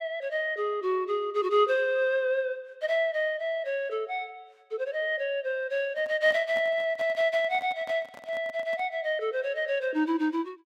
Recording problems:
handling noise; from 6 to 9 s; peak -11 dB vs average level

